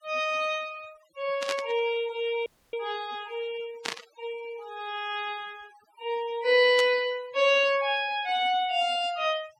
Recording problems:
noise reduction artefacts; signal-to-artefact ratio 21 dB
static burst; at 1.5 s, at 4 s and at 7 s; peak 0 dB vs average level
audio cutting out; at 2.5 s

